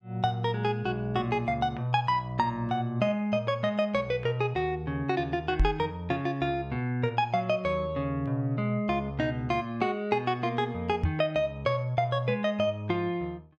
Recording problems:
microphone bump; at 5.5 s and at 11 s; peak +6 dB vs average level

